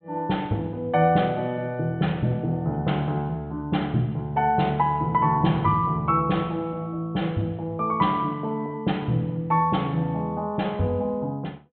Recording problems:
treble missing; nothing above 4 kHz

